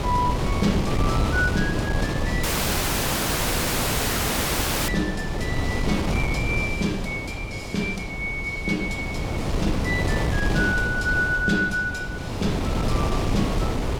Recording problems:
wind noise; below 430 Hz, SNR 0 dB
dropout; at 2.5 s for 2.5 s

